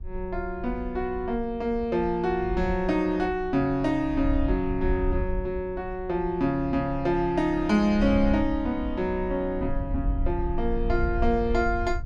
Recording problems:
wind noise; below 66 Hz, SNR 8 dB

